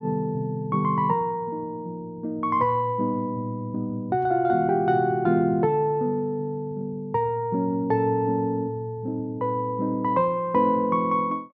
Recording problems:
low-pass filter; nothing above 8 kHz

